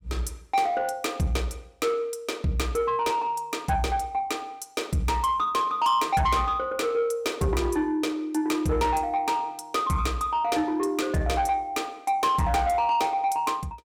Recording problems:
distortion; soft clipping, signal-to-distortion ratio 11 dB

